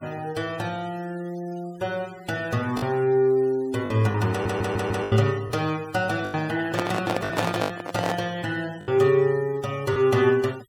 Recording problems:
noise reduction artefacts; signal-to-artefact ratio 22 dB
lost packets; 5% of the sound replaced, filled with the last packet
audio stuttering; at 4.5 s
handling noise; from 6.5 to 8 s; peak +3 dB vs average level

